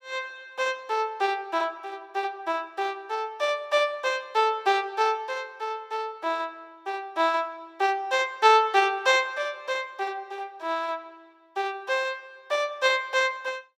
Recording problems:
none

